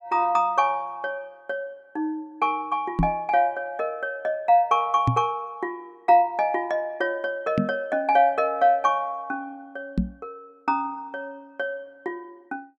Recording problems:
microphone bump; 4 times, first at 3 s; peak +5 dB vs average level

